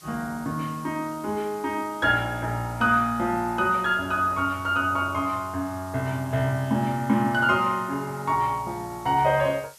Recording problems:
background hiss; slope +1 dB per octave, SNR 23 dB

